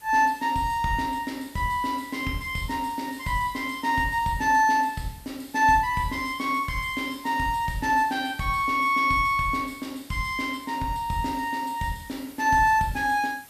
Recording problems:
hiss; slope -1 dB per octave, SNR 23 dB

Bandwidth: 14.5 kHz